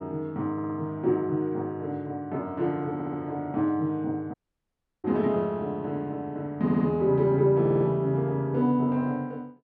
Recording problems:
stutter; 4 times, first at 0.5 s
dropout; at 4.5 s for 0.5 s

